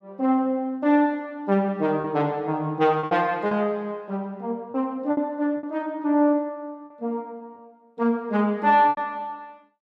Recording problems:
lost packets; 5% of the sound replaced, filled with repeated pitch periods

